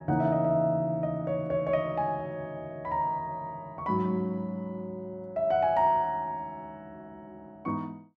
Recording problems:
none

